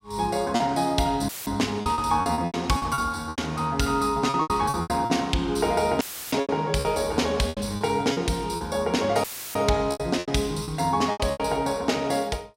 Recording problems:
packet loss; 12% of the sound replaced, filled with repeated pitch periods
dropout; at 1.5 s, at 6 s and at 9 s; filled with static

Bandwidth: 16 kHz